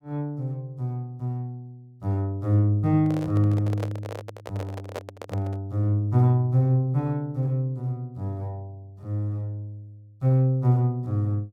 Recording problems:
microphone handling noise; from 3 to 5.5 s; peak -4 dB vs average level

